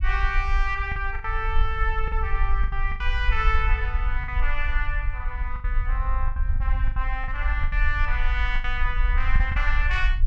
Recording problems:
low-frequency rumble; below 50 Hz, SNR -2 dB
packet loss; 9% of the sound replaced, filled with the last packet

